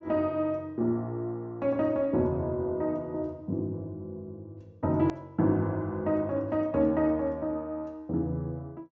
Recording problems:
treble cut off; nothing above 7.6 kHz
edit click; at 5 s

